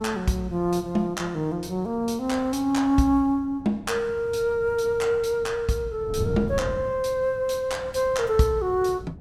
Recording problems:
wind noise; below 190 Hz, SNR 15 dB

